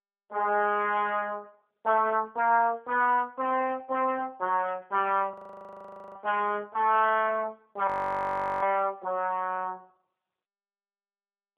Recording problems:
telephone audio; 220 Hz to 3.3 kHz, AMR-NB
audio freezing; at 5.5 s for 1 s and at 8 s for 0.5 s

